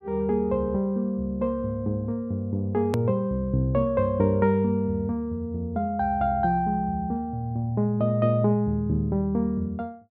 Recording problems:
treble cut off; nothing above 5.5 kHz
click at an edit; at 3 s

